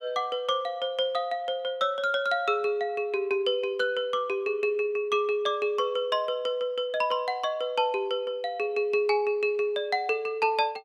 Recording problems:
none

